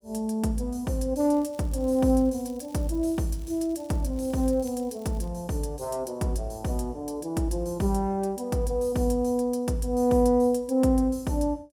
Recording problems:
crackling; from 1 to 5.5 s; loose cable, SNR 28 dB

